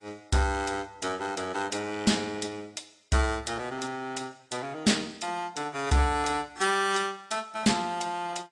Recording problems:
lossy codec; AAC, log-spectral distance 4 dB
distorted audio; hard clipping, signal-to-distortion ratio 12 dB

